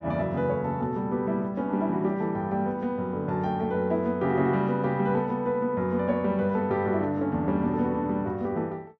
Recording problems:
none

